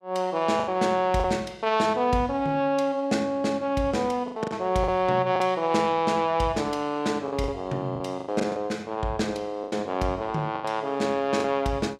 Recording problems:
lost packets; 7% of the sound replaced, filled with the last packet

